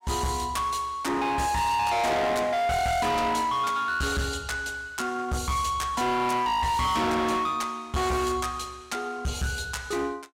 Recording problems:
distortion; hard clipping, uneven, signal-to-distortion ratio 6 dB

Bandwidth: 16 kHz